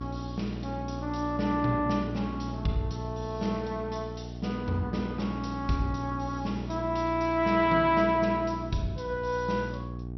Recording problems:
lossy compression; MP2, log-spectral distance 2 dB, nothing above 5.8 kHz
mains hum; 60 Hz, harmonics up to 480 Hz, SNR 9 dB

